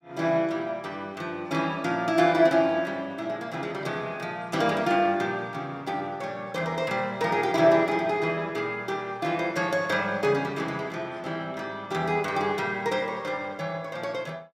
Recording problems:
none

